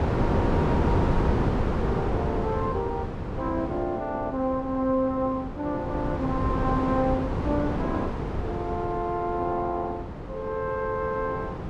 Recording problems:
wind noise; below 490 Hz, SNR 0 dB

